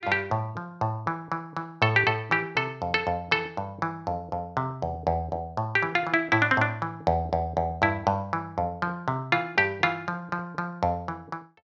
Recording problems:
none

